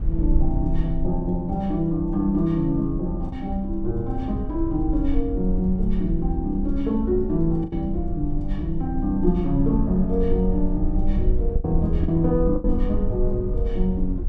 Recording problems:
rumble; below 52 Hz, strongest tone 22 Hz, SNR 5 dB
lost packets; 2% of the sound replaced, filled with the last packet

